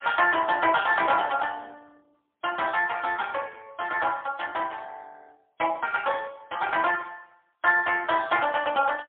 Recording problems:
phone line; 280 Hz to 3.5 kHz, AMR-NB, then MP3

